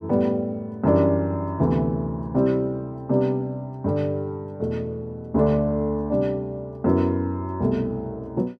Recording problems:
none

